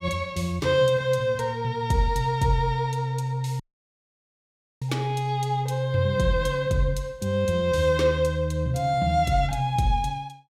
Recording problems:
dropout; at 3.5 s for 1 s

